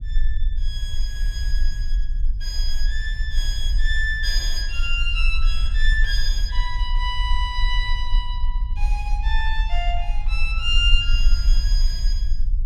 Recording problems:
rumble; below 42 Hz, strongest tone 20 Hz, SNR -2 dB

